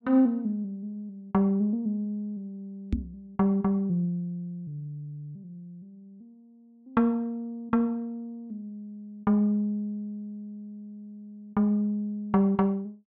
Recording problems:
microphone bump; at 3 s; peak +4 dB vs average level

